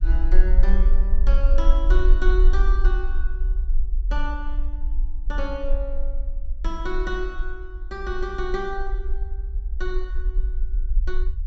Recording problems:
low-pass filter; nothing above 8 kHz
rumble; below 42 Hz, strongest tone 22 Hz, SNR -7 dB

